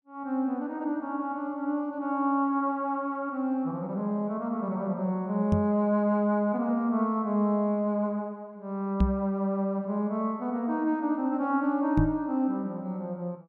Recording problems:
knock on the microphone; at 5.5 s, at 9 s and at 12 s; peak +7 dB vs average level

